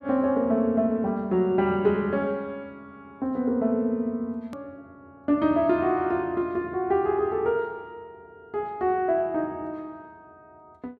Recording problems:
hard cut with a click; at 4.5 s

